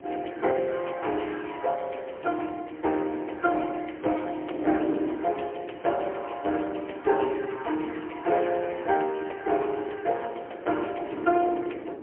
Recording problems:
telephone audio; 260 Hz to 3.2 kHz, AMR-NB, then MP3
wind noise; below 430 Hz, SNR 11 dB

